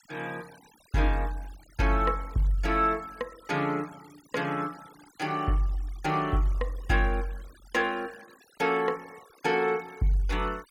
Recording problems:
denoising artefacts; signal-to-artefact ratio 23 dB

